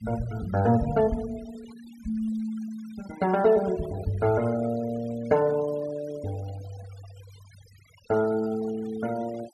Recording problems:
denoising artefacts; signal-to-artefact ratio 20 dB

